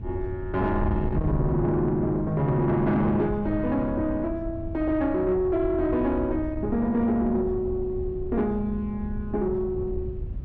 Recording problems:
distorted audio; soft clipping, signal-to-distortion ratio 12 dB
wind on the microphone; below 120 Hz, SNR 9 dB

